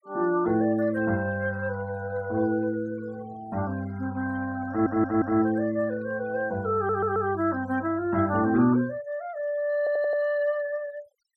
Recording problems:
noise reduction artefacts; signal-to-artefact ratio 22 dB
audio stuttering; at 4.5 s, at 7 s and at 10 s

